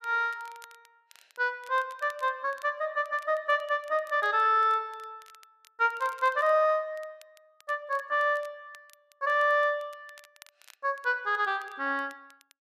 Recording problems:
crackling; vinyl, SNR 29 dB

